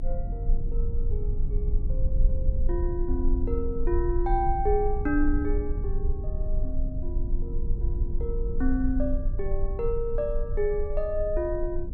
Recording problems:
low-frequency rumble; below 50 Hz, strongest tone 22 Hz, SNR 0 dB

